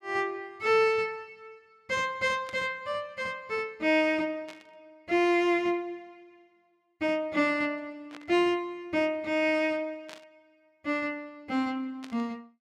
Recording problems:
static burst; 5 times, first at 2.5 s; peak -12 dB vs average level

